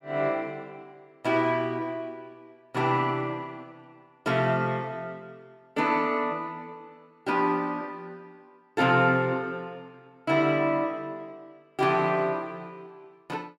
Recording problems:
none

